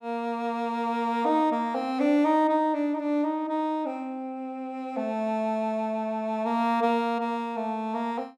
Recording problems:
none

